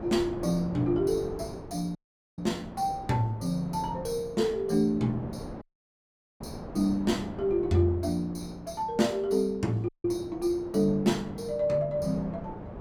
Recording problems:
wind noise; below 570 Hz, SNR 13 dB
audio cutting out; at 2 s, at 5.5 s for 1 s and at 10 s

